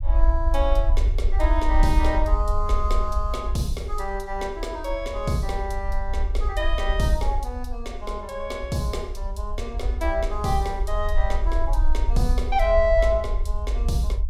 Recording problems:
rumble; below 54 Hz, SNR 0 dB

